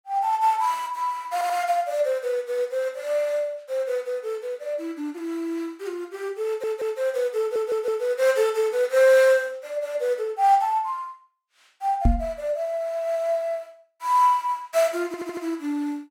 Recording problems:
stutter; 4 times, first at 1.5 s
microphone thump; at 12 s; peak +7 dB vs average level

